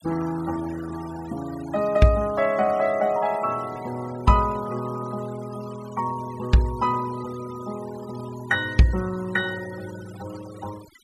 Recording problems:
noise reduction artefacts; signal-to-artefact ratio 19 dB

